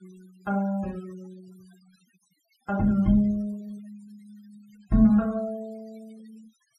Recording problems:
denoising artefacts; signal-to-artefact ratio 27 dB

